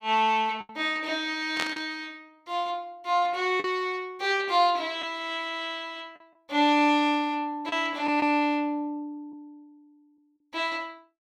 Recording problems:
lost packets; 2% of the sound replaced, filled with the last packet
burst of static; at 1.5 s; peak 0 dB vs average level

